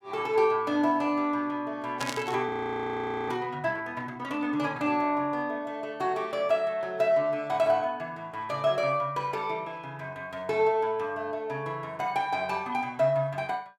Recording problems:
static burst; at 2 s; peak -1 dB vs average level
audio freezing; at 2.5 s for 1 s

